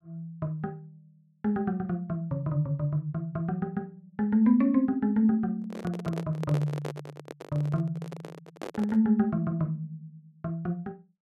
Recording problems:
microphone handling noise; from 5.5 to 9 s; peak -4 dB vs average level

